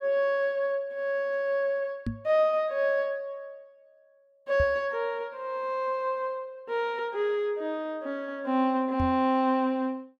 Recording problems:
microphone thump; at 2 s, at 4.5 s and at 9 s; peak 0 dB vs average level

